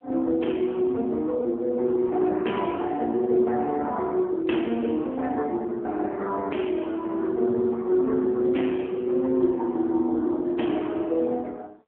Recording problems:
telephone audio; 220 Hz to 3.4 kHz, AMR-NB

